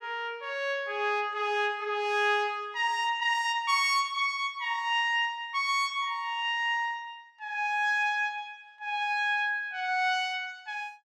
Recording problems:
none

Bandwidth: 15 kHz